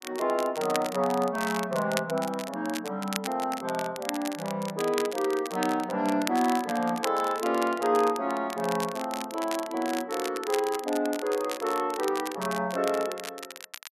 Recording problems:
crackle; vinyl, SNR 11 dB

